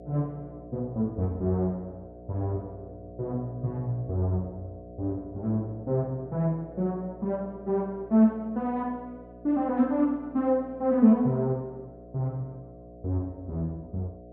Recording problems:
mains hum; 60 Hz, harmonics up to 720 Hz, SNR 17 dB

